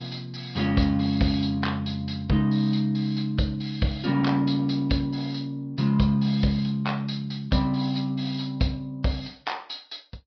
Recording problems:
low-pass filter; nothing above 5.5 kHz
codec artefacts; Vorbis, log-spectral distance 3 dB

